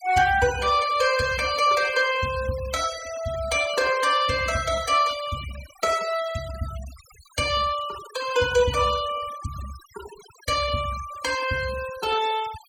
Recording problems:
noise reduction artefacts; signal-to-artefact ratio 15 dB

